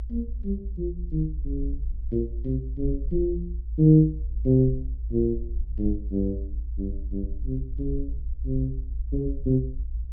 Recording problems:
rumble; below 58 Hz, SNR 6 dB

